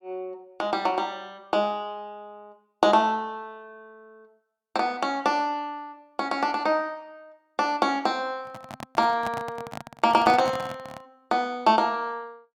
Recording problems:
handling noise; from 8.5 to 11 s; peak -4 dB vs average level

